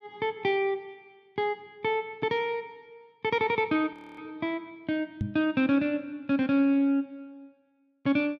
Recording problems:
frozen audio; at 4 s
microphone bump; at 5 s; peak +1 dB vs average level

